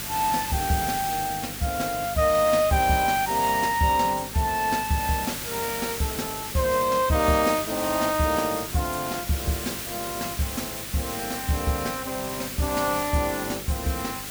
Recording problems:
hum; 50 Hz, harmonics up to 1.4 kHz, SNR 19 dB
background hiss; SNR 6 dB
crackle; at 7.5 s and from 9 to 12 s; loose cable, SNR 27 dB

